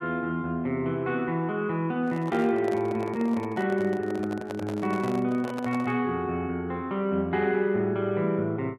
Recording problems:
microphone handling noise; from 2 to 6 s; peak -6 dB vs average level

